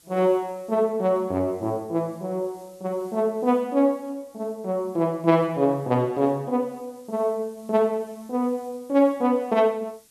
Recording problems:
background hiss; SNR 30 dB

